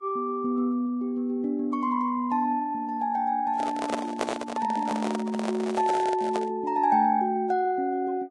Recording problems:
codec artefacts; Vorbis, log-spectral distance 2 dB
handling noise; from 3.5 to 6.5 s; peak +3 dB vs average level

